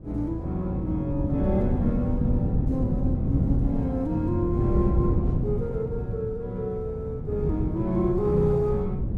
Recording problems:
wind noise; below 190 Hz, SNR 2 dB

